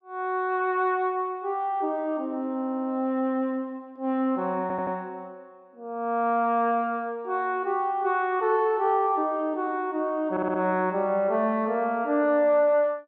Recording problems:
stutter; at 2.5 s, at 4.5 s and at 10 s

